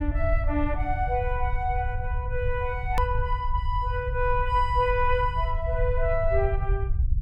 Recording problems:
rumble; below 74 Hz, SNR 2 dB
edit click; at 3 s

